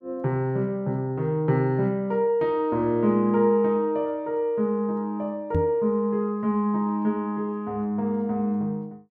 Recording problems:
microphone bump; at 5.5 s; peak +3 dB vs average level

